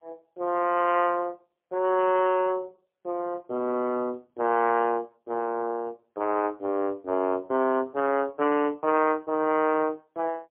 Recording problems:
phone line; 220 Hz to 3.1 kHz, AMR-NB, then MP3

